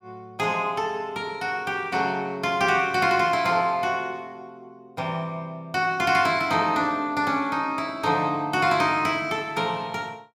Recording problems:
none

